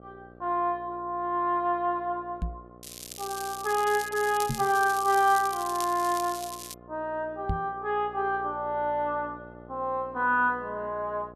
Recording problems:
hum; 60 Hz, harmonics up to 1.4 kHz, SNR 22 dB
knock on the microphone; at 2.5 s, at 4.5 s and at 7.5 s; peak +1 dB vs average level
crackle; from 3 to 6.5 s; loose cable, SNR 11 dB

